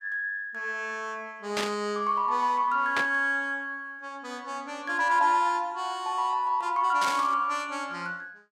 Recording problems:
burst of static; at 1.5 s, at 3 s and at 7 s; peak +1 dB vs average level

